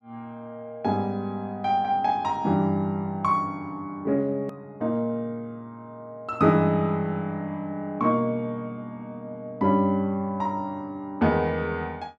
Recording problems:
click at an edit; at 4.5 s

